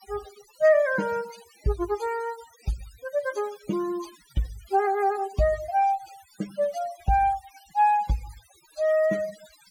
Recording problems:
denoising artefacts; signal-to-artefact ratio 19 dB

